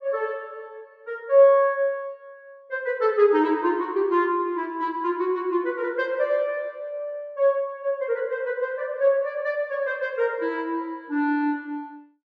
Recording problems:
none

